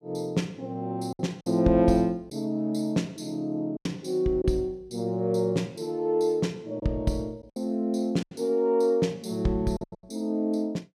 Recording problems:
packet loss; 5% of the sound replaced, filled with silence

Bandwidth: 14.5 kHz